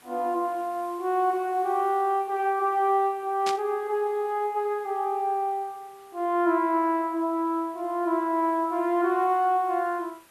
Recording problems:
background hiss; slope -2 dB per octave, SNR 29 dB
burst of static; at 3.5 s; peak -2 dB vs average level

